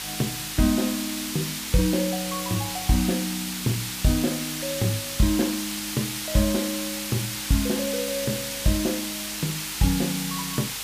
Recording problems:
hum; 50 Hz, harmonics up to 500 Hz, SNR 25 dB
hiss; slope +2 dB per octave, SNR 3 dB

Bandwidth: 15 kHz